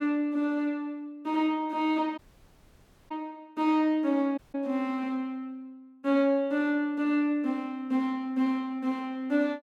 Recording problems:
dropout; at 2 s for 1 s and at 4.5 s

